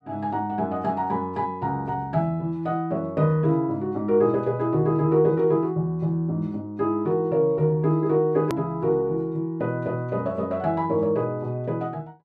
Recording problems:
click at an edit; at 8.5 s

